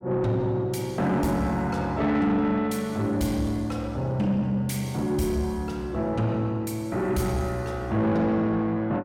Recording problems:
distortion; soft clipping, signal-to-distortion ratio 10 dB

